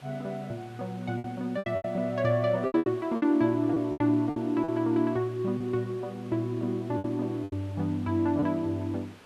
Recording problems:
background hiss; SNR 23 dB
lost packets; 9% of the sound replaced, filled with repeated pitch periods

